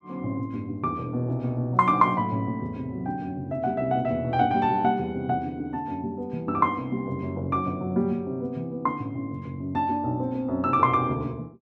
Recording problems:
none

